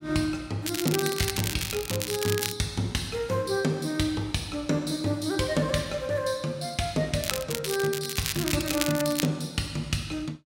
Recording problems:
crackle; from 0.5 to 2.5 s and from 7 to 9.5 s; loose cable, SNR 3 dB

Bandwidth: 16 kHz